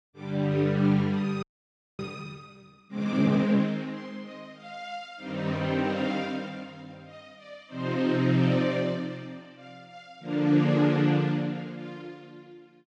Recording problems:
audio freezing; at 1.5 s for 0.5 s

